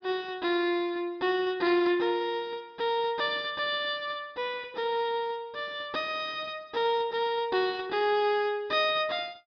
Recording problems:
treble cut off; nothing above 5.5 kHz

